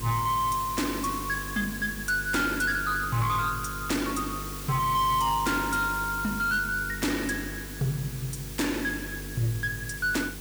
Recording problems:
distortion; soft clipping, signal-to-distortion ratio 11 dB
hum; 50 Hz, harmonics up to 500 Hz, SNR 12 dB
background hiss; slope 0 dB per octave, SNR 10 dB

